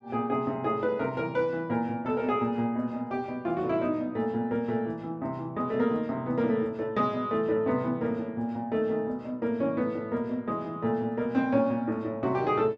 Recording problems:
none

